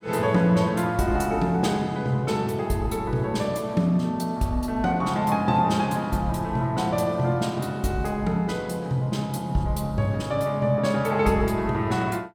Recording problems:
none

